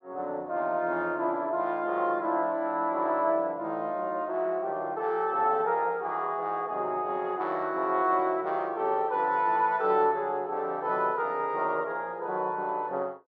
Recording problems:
none

